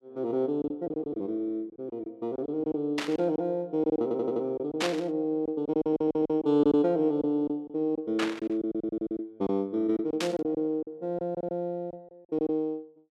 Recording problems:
lost packets; 10% of the sound replaced, filled with silence
static burst; 4 times, first at 3 s; peak +3 dB vs average level
stutter; at 4 s, at 6 s and at 8.5 s

